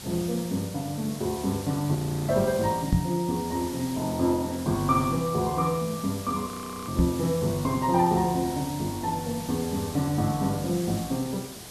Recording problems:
background hiss; SNR 12 dB
audio freezing; at 2 s and at 6.5 s
microphone thump; at 3 s and at 7 s; peak +7 dB vs average level

